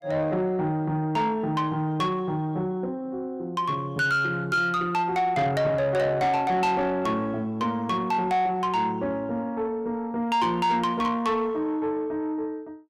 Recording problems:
distorted audio; soft clipping, signal-to-distortion ratio 11 dB

